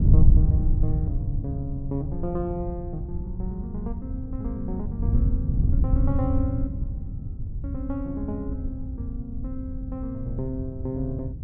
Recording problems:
wind noise; below 98 Hz, SNR -5 dB

